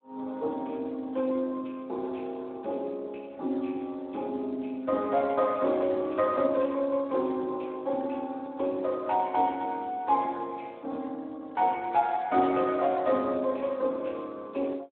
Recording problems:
telephone audio; 260 Hz to 3.8 kHz, Speex

